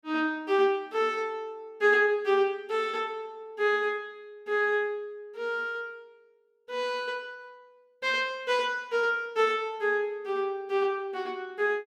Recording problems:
none

